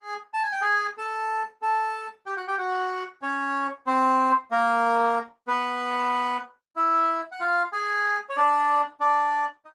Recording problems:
codec artefacts; Opus, log-spectral distance 3 dB

